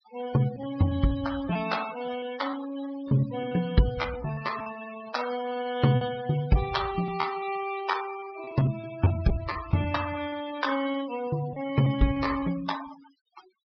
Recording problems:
treble missing; nothing above 5.5 kHz
denoising artefacts; signal-to-artefact ratio 12 dB
lost packets; 7% of the sound replaced, filled with repeated pitch periods

